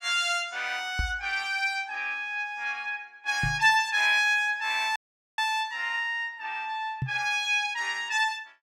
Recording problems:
microphone thump; at 1 s, at 3.5 s and at 7 s; peak 0 dB vs average level
dropout; at 5 s

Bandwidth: 16 kHz